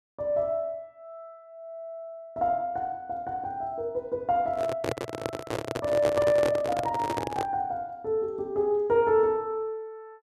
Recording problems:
microphone handling noise; from 4.5 to 7.5 s; peak +2 dB vs average level

